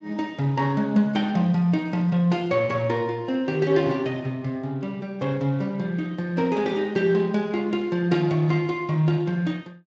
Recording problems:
lossy compression; Speex, log-spectral distance 2 dB

